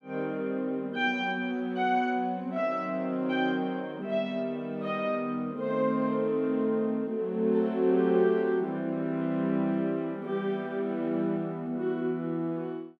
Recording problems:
none

